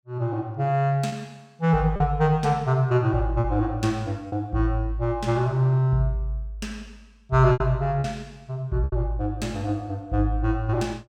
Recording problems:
lost packets; 3% of the sound replaced, filled with repeated pitch periods

